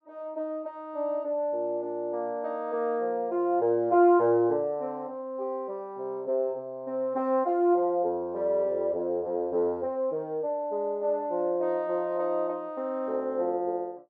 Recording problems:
none

